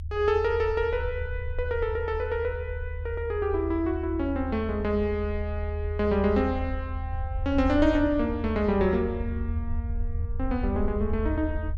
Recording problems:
rumble; below 80 Hz, SNR 6 dB

